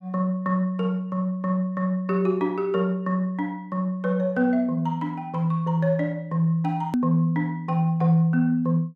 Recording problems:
edit click; at 7 s

